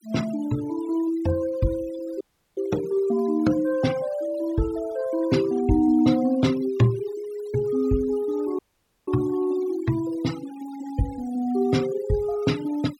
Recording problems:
denoising artefacts; signal-to-artefact ratio 19 dB
audio cutting out; at 2 s and at 8.5 s

